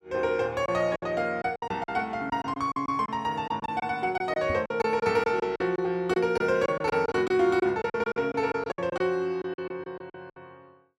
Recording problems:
packet loss; 13% of the sound replaced, filled with silence
microphone bump; at 4.5 s; peak -3 dB vs average level

